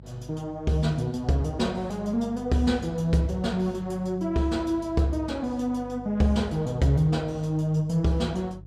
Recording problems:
hum; 50 Hz, harmonics up to 500 Hz, SNR 18 dB

